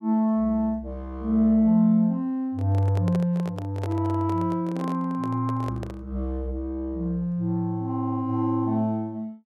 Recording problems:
microphone handling noise; from 2.5 to 6 s; peak -6 dB vs average level

